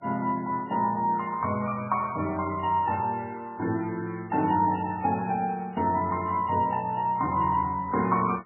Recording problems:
codec artefacts; MP3, log-spectral distance 3 dB, nothing above 2.4 kHz

